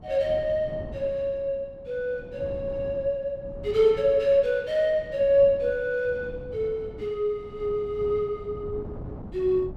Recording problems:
wind noise; below 300 Hz, SNR 16 dB

